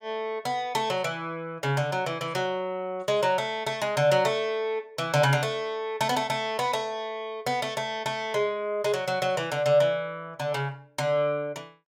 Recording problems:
none

